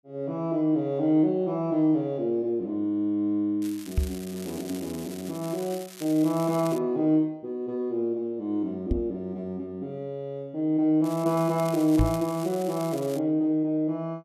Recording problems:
crackling; from 3.5 to 7 s and from 11 to 13 s; loose cable, SNR 17 dB
microphone thump; at 4 s, at 9 s and at 12 s; peak +6 dB vs average level

